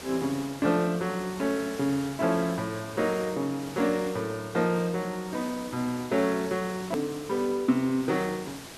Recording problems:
background hiss; slope -3 dB per octave, SNR 14 dB
click at an edit; at 7 s

